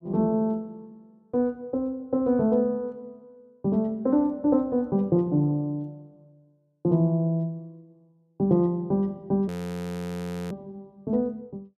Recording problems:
frozen audio; at 9.5 s for 1 s

